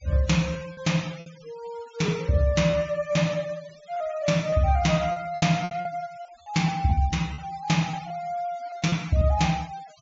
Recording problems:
treble cut off; nothing above 7.4 kHz
denoising artefacts; signal-to-artefact ratio 20 dB
packet loss; 7% of the sound replaced, filled with repeated pitch periods

